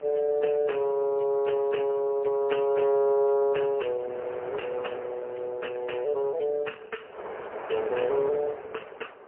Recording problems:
phone line; 320 Hz to 3.1 kHz, AMR-NB, then MP3
wind on the microphone; below 1 kHz, SNR 15 dB

